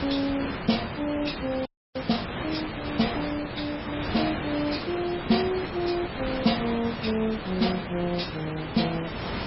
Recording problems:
lossy compression; MP3, log-spectral distance 12 dB, nothing above 5.3 kHz
background hiss; SNR 5 dB
wind noise; below 720 Hz, SNR 24 dB
frozen audio; at 1.5 s

